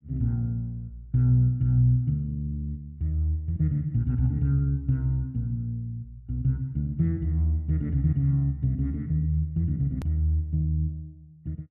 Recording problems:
click at an edit; at 10 s

